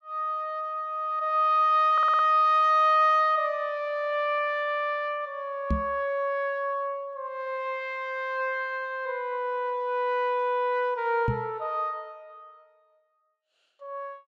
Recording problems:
audio stuttering; at 2 s
microphone bump; at 5.5 s and at 11 s; peak +2 dB vs average level

